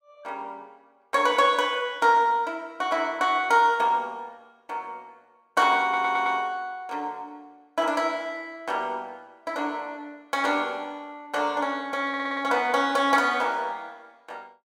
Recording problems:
audio stuttering; at 6 s and at 12 s

